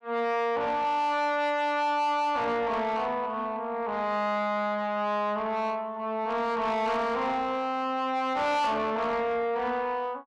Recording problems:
distorted audio; soft clipping, signal-to-distortion ratio 11 dB

